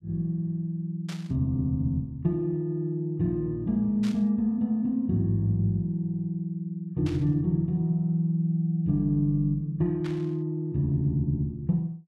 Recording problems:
static burst; 4 times, first at 1 s; peak -10 dB vs average level

